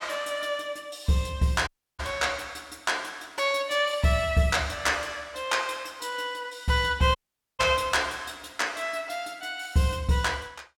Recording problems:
dropout; at 1.5 s and at 7 s

